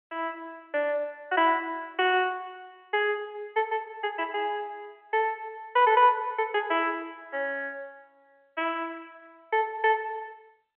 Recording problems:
phone line; 300 Hz to 3.2 kHz, G.711

